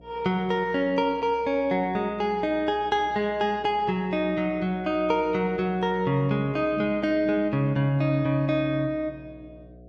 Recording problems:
hum; 60 Hz, harmonics up to 720 Hz, SNR 24 dB

